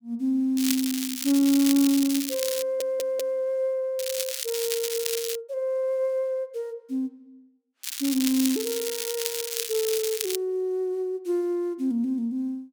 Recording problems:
crackling; from 0.5 to 3 s, from 4 to 5.5 s and from 8 to 10 s; loose cable, SNR 4 dB
stutter; at 2.5 s

